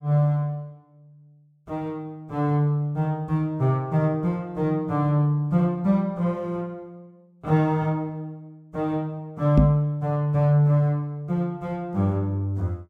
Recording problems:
knock on the microphone; at 9.5 s; peak +8 dB vs average level

